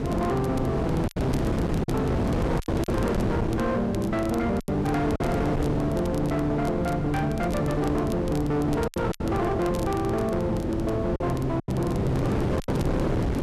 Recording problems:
distortion; hard clipping, signal-to-distortion ratio 8 dB
mains hum; 50 Hz, harmonics up to 400 Hz, SNR 23 dB
wind noise; below 410 Hz, SNR 2 dB
crackle; vinyl, SNR 21 dB
packet loss; 5% of the sound replaced, filled with silence

